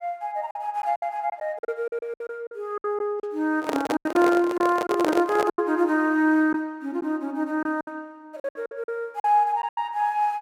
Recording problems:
packet loss; 11% of the sound replaced, filled with silence
handling noise; from 3.5 to 5.5 s; peak +2 dB vs average level

